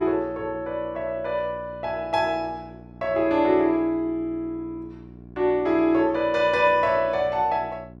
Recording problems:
electrical hum; 60 Hz, harmonics up to 1 kHz, SNR 20 dB

